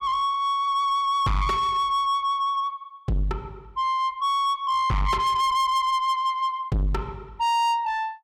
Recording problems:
distortion; soft clipping, signal-to-distortion ratio 8 dB

